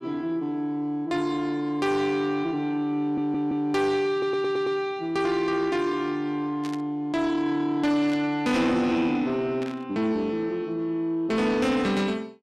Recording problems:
distorted audio; soft clipping, signal-to-distortion ratio 12 dB
stutter; at 3 s and at 4 s
static burst; at 6.5 s, at 8 s and at 9.5 s; peak -10 dB vs average level

